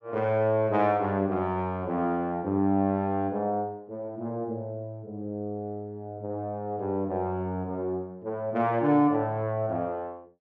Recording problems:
none

